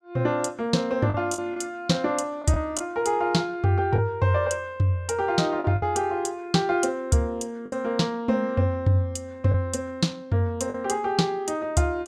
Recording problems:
lost packets; 3% of the sound replaced, filled with the last packet

